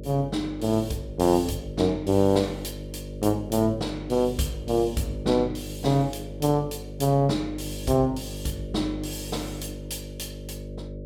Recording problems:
hum; 50 Hz, harmonics up to 600 Hz, SNR 11 dB

